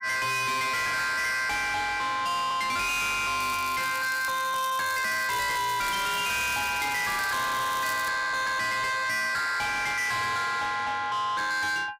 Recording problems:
distorted audio; soft clipping, signal-to-distortion ratio 6 dB
crackling; from 3.5 to 8 s; loose cable, SNR 13 dB

